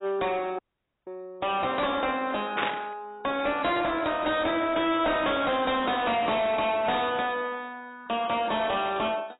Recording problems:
lossy compression; AAC, log-spectral distance 4 dB, nothing above 3.9 kHz
distorted audio; hard clipping, signal-to-distortion ratio 7 dB
dropout; at 0.5 s
burst of static; at 2.5 s; peak +2 dB vs average level

